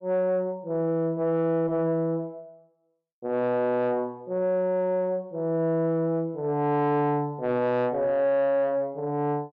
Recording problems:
distortion; soft clipping, signal-to-distortion ratio 11 dB

